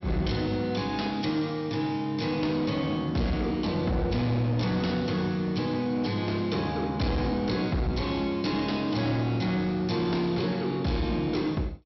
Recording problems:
low-pass filter; nothing above 5.7 kHz
distortion; hard clipping, signal-to-distortion ratio 11 dB

